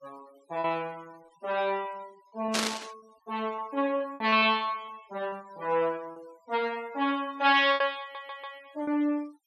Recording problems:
denoising artefacts; signal-to-artefact ratio 26 dB
lost packets; 5% of the sound replaced, filled with repeated pitch periods
burst of static; at 2.5 s; peak +4 dB vs average level
audio stuttering; at 8 s

